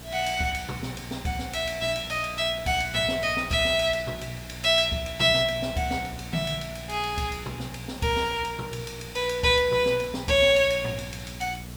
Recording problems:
electrical hum; 60 Hz, harmonics up to 540 Hz, SNR 17 dB
hiss; slope -3 dB per octave, SNR 19 dB

